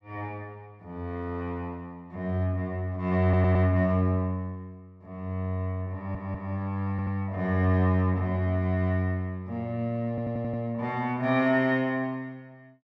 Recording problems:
audio stuttering; 4 times, first at 3 s

